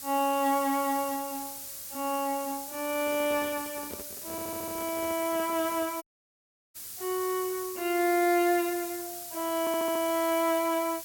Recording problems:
hiss; SNR 8 dB
microphone handling noise; from 3 to 6 s; peak -9 dB vs average level
stutter; at 4.5 s and at 9.5 s
audio cutting out; at 6 s for 0.5 s

